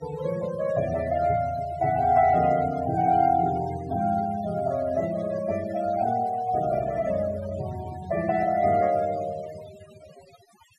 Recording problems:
noise reduction artefacts; signal-to-artefact ratio 16 dB

